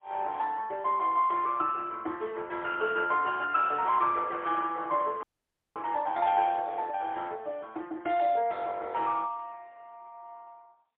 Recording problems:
phone line; 320 Hz to 3.5 kHz, AMR-NB, then MP3
audio freezing; at 5 s for 0.5 s

